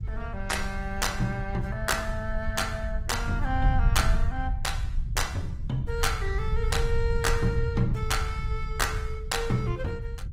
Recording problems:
lossy codec; Opus, log-spectral distance 2 dB
rumble; below 84 Hz, SNR 2 dB

